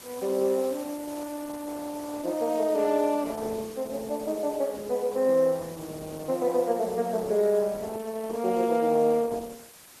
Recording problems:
lossy codec; Opus, log-spectral distance 6 dB
background hiss; slope -1 dB per octave, SNR 19 dB

